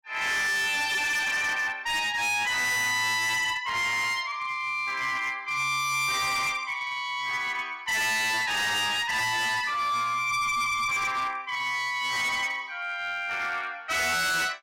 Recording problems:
distortion; hard clipping, signal-to-distortion ratio 7 dB

